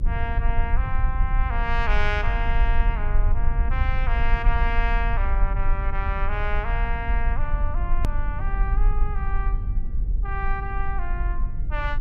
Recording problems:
rumble; below 48 Hz, strongest tone 20 Hz, SNR -4 dB
hard cut with a click; at 8 s

